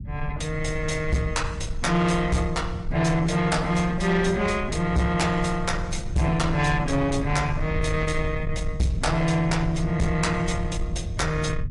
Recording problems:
lossy compression; MP3, log-spectral distance 2 dB, nothing above 11 kHz
distorted audio; soft clipping, signal-to-distortion ratio 11 dB
low-frequency rumble; below 110 Hz, SNR 8 dB

